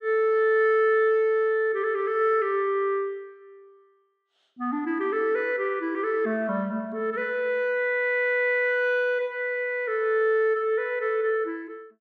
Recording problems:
none

